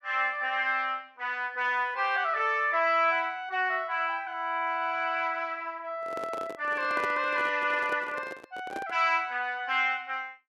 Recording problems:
microphone handling noise; from 6 to 9 s; peak -4 dB vs average level

